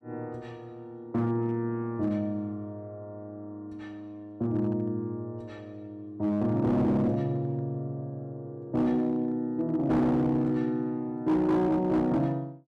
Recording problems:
distortion; hard clipping, uneven, signal-to-distortion ratio 12 dB

